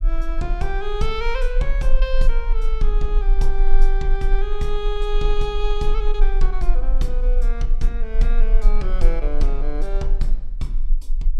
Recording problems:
rumble; below 32 Hz, strongest tone 20 Hz, SNR -5 dB

